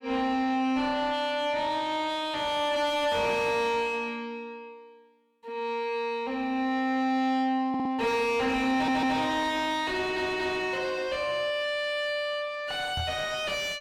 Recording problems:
distorted audio; soft clipping, signal-to-distortion ratio 6 dB
stutter; at 7.5 s, at 8.5 s and at 10 s
microphone bump; at 13 s; peak 0 dB vs average level

